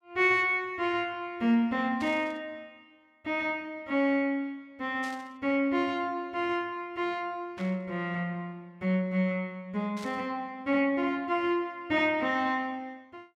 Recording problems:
burst of static; 4 times, first at 2 s; peak -12 dB vs average level

